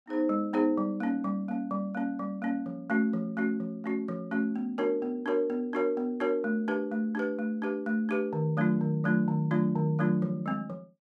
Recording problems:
none

